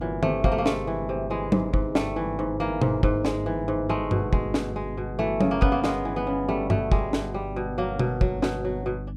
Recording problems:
electrical hum; 50 Hz, harmonics up to 300 Hz, SNR 11 dB

